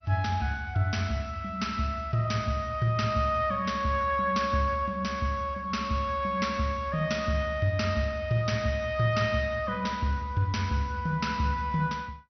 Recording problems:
lossy compression; MP2, log-spectral distance 2 dB, nothing above 6 kHz

